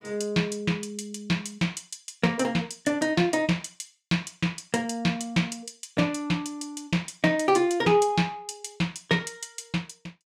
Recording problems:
none

